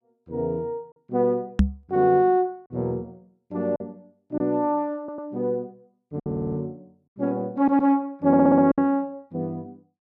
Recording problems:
packet loss; 3% of the sound replaced, filled with silence
microphone thump; at 1.5 s; peak +8 dB vs average level
audio stuttering; 4 times, first at 5 s

